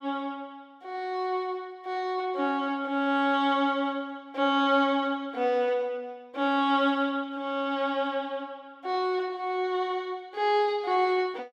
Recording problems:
none

